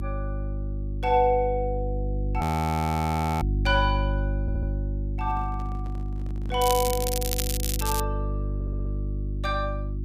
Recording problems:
hum; 50 Hz, harmonics up to 550 Hz, SNR 1 dB
frozen audio; at 2.5 s for 1 s
stutter; at 4.5 s and at 8.5 s
handling noise; from 5 to 7.5 s; peak -10 dB vs average level
crackle; from 6.5 to 8 s; loose cable, SNR 2 dB

